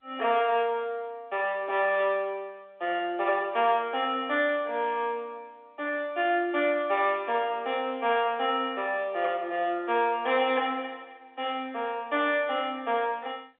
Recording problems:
telephone audio; 300 Hz to 3.6 kHz, G.711

